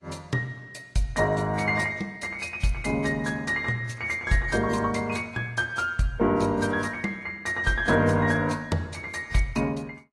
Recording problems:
codec artefacts; AAC, log-spectral distance 3 dB

